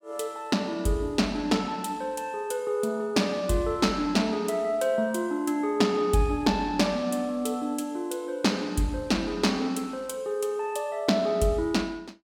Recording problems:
none

